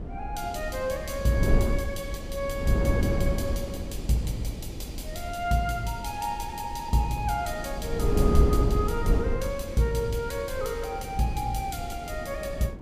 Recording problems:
wind noise; below 210 Hz, SNR 2 dB

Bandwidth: 15.5 kHz